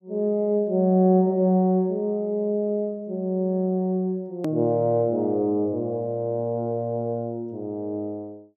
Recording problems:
hard cut with a click; at 4.5 s

